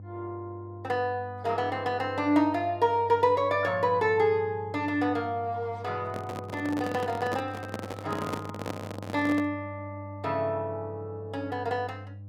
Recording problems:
hum; 50 Hz, harmonics up to 500 Hz, SNR 14 dB
handling noise; from 6 to 9.5 s; peak 0 dB vs average level

